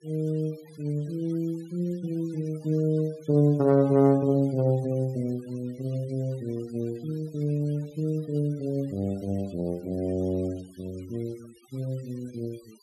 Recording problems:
denoising artefacts; signal-to-artefact ratio 26 dB

